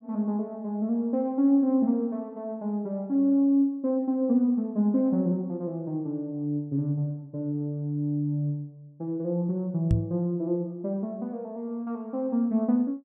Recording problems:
knock on the microphone; at 10 s; peak +6 dB vs average level

